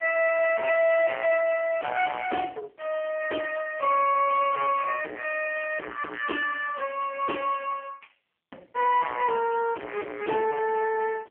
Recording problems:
phone line; 340 Hz to 2.9 kHz, AMR-NB
distortion; soft clipping, signal-to-distortion ratio 6 dB

